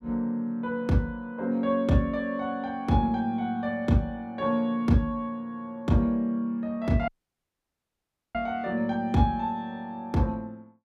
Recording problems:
audio cutting out; at 7 s for 1.5 s

